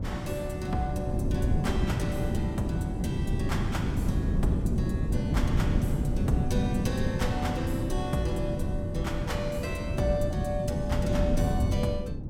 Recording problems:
wind noise; below 200 Hz, SNR -3 dB

